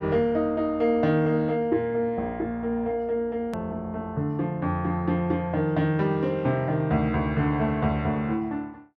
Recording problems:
hard cut with a click; at 3.5 s

